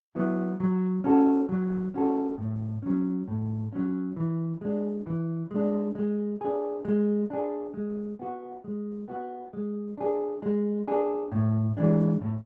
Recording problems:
codec artefacts; Opus, then Opus, log-spectral distance 2 dB

